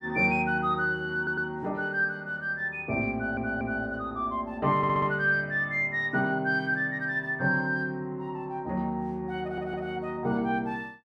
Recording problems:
audio stuttering; 4 times, first at 1 s

